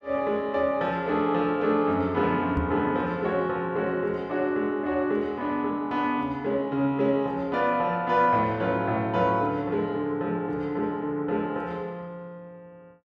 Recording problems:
microphone thump; at 2.5 s; peak 0 dB vs average level

